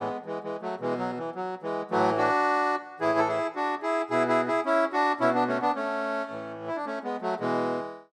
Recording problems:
none

